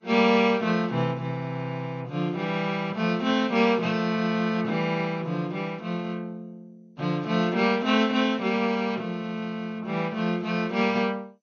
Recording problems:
lossy compression; Vorbis, then MP2, log-spectral distance 2 dB, nothing above 6.3 kHz

